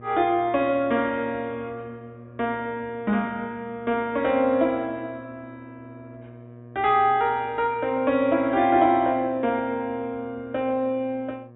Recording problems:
low-pass filter; nothing above 4 kHz
mains hum; 60 Hz, harmonics up to 1.2 kHz, SNR 21 dB

